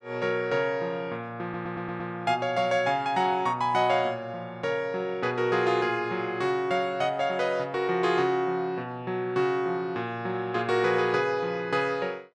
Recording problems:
audio stuttering; at 1.5 s

